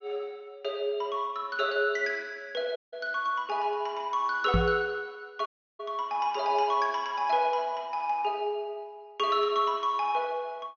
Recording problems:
treble cut off; nothing above 6.7 kHz
audio cutting out; at 3 s and at 5.5 s
microphone bump; at 4.5 s; peak +6 dB vs average level

